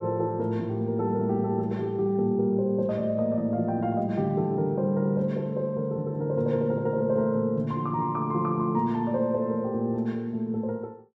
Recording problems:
none

